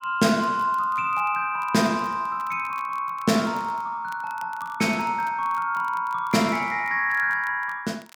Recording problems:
crackling; vinyl, SNR 28 dB

